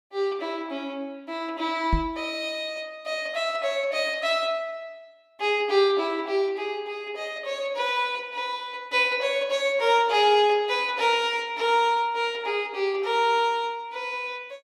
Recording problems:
microphone thump; at 2 s; peak +4 dB vs average level

